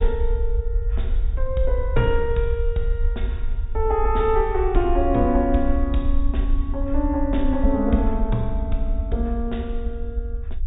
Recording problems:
treble missing; nothing above 4 kHz
low-frequency rumble; below 56 Hz, SNR 3 dB

